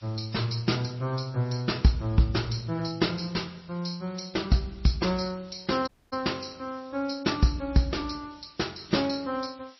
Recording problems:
lossy codec; MP3, log-spectral distance 11 dB, nothing above 5.7 kHz
background hiss; SNR 27 dB
audio cutting out; at 6 s

